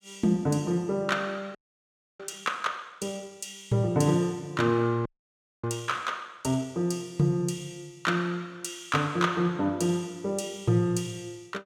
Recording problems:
frozen audio; at 1.5 s for 0.5 s and at 5 s for 0.5 s

